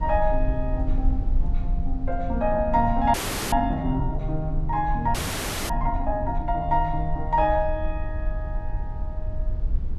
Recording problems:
rumble; below 54 Hz, SNR 5 dB
frozen audio; at 3 s and at 5 s for 0.5 s

